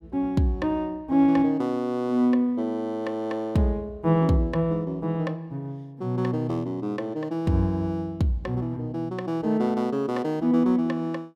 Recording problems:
none

